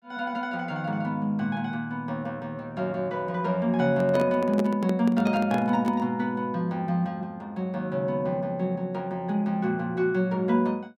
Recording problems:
microphone handling noise; from 4 to 6 s; peak -1 dB vs average level

